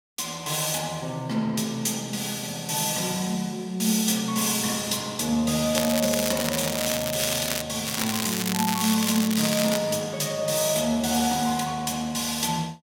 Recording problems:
crackling; from 6 to 7.5 s and from 8 to 10 s; loose cable, SNR 4 dB

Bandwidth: 16.5 kHz